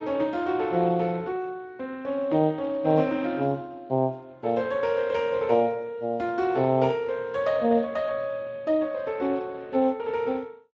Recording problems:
codec artefacts; Speex, log-spectral distance 3 dB

